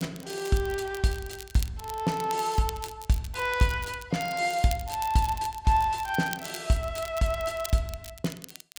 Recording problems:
crackle; vinyl, SNR 14 dB

